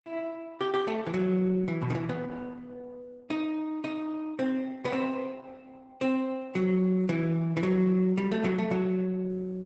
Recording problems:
codec artefacts; Opus, log-spectral distance 3 dB, nothing above 8 kHz

